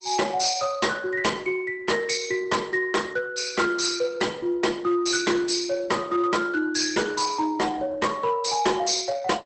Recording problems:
lossy codec; Opus, log-spectral distance 6 dB, nothing above 8.2 kHz
distorted audio; hard clipping, signal-to-distortion ratio 11 dB

